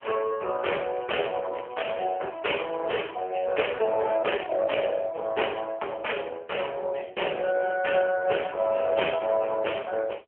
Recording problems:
telephone audio; 320 Hz to 3.2 kHz, AMR-NB
crackling; from 0.5 to 3.5 s and at 8.5 s; loose cable, SNR 26 dB

